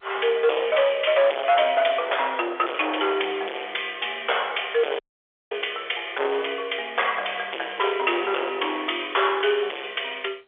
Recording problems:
phone line; 340 Hz to 3.5 kHz, G.711
distortion; hard clipping, signal-to-distortion ratio 6 dB
dropout; at 5 s for 0.5 s

